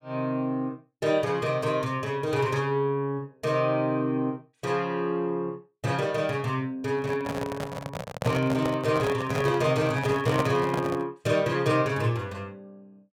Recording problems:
handling noise; from 7 to 11 s; peak +3 dB vs average level

